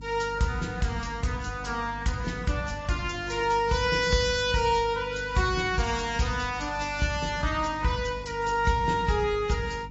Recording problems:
lossy compression; AAC, log-spectral distance 4 dB, nothing above 7.3 kHz
hum; 50 Hz, harmonics up to 300 Hz, SNR 16 dB

